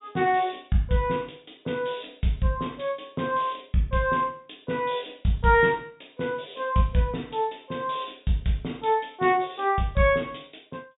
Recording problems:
low-pass filter; nothing above 4 kHz

